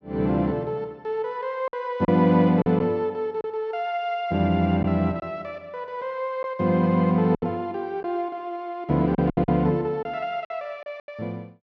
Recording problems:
lost packets; 5% of the sound replaced, filled with silence

